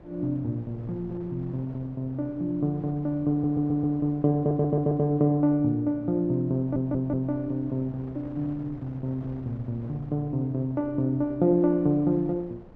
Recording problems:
wind noise; below 480 Hz, SNR 21 dB
audio stuttering; at 3.5 s, at 4.5 s and at 6.5 s

